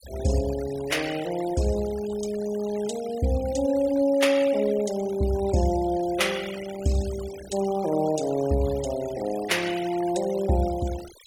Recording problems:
noise reduction artefacts; signal-to-artefact ratio 16 dB

